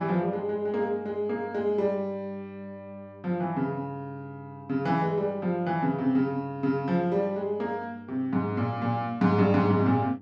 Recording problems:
electrical hum; 50 Hz, harmonics up to 1.2 kHz, SNR 22 dB

